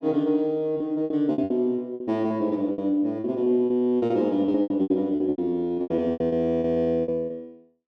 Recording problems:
lost packets; 17% of the sound replaced, filled with repeated pitch periods

